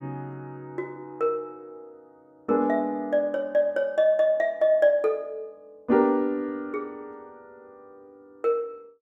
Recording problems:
none

